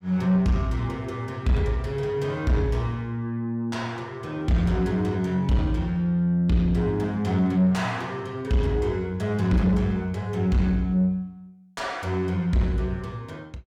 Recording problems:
distortion; soft clipping, signal-to-distortion ratio 11 dB

